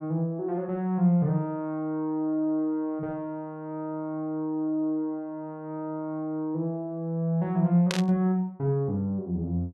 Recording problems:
static burst; at 8 s; peak +2 dB vs average level

